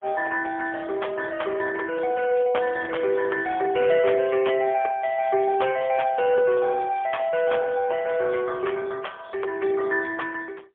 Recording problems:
telephone audio; 340 Hz to 2.8 kHz, AMR-NB, then MP3
crackling; from 2.5 to 4 s, from 5 to 7.5 s and at 8.5 s; loose cable, SNR 27 dB

